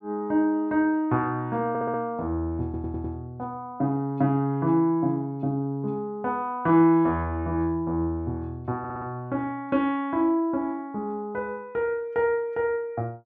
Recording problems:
audio stuttering; at 1.5 s, at 2.5 s and at 9 s

